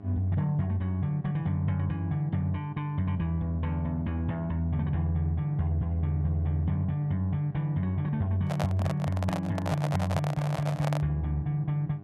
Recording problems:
hum; 50 Hz, harmonics up to 1.1 kHz, SNR 17 dB
microphone handling noise; from 8.5 to 11 s; peak 0 dB vs average level

